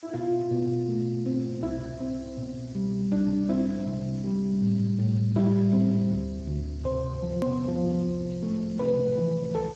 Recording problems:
codec artefacts; Speex, log-spectral distance 4 dB, nothing above 13.1 kHz
background hiss; slope +3 dB per octave, SNR 27 dB
click at an edit; at 7.5 s

